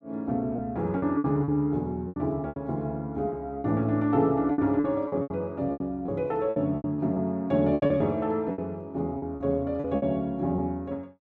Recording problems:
packet loss; 12% of the sound replaced, filled with repeated pitch periods

